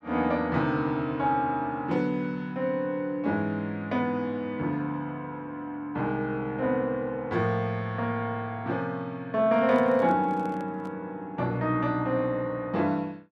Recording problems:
handling noise; from 9.5 to 11 s; peak -10 dB vs average level

